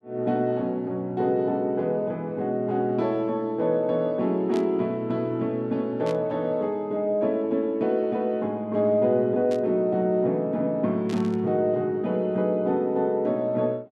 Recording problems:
static burst; 4 times, first at 4.5 s; peak -12 dB vs average level

